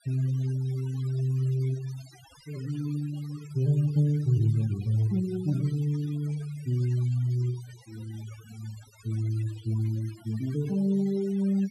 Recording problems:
denoising artefacts; signal-to-artefact ratio 21 dB

